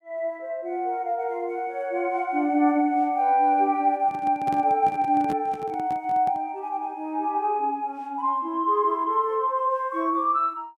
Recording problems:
handling noise; from 4 to 6.5 s; peak -6 dB vs average level

